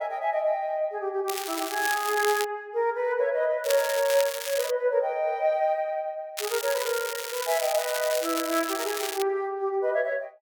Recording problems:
crackle; from 1.5 to 2.5 s, from 3.5 to 4.5 s and from 6.5 to 9 s; loose cable, SNR 6 dB

